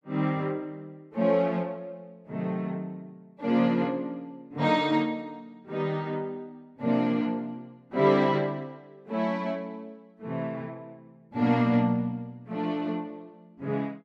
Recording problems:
none

